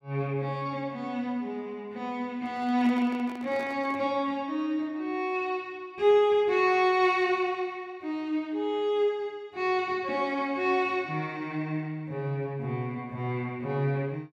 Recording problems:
handling noise; from 2.5 to 4 s; peak -10 dB vs average level

